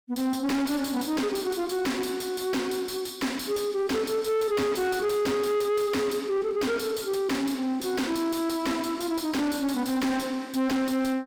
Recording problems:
distortion; soft clipping, signal-to-distortion ratio 7 dB

